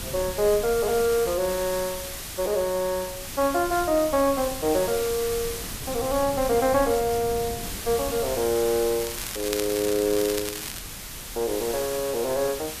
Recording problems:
hiss; slope 0 dB per octave, SNR 8 dB
wind on the microphone; below 210 Hz, SNR 17 dB
crackling; from 9 to 11 s; loose cable, SNR 9 dB

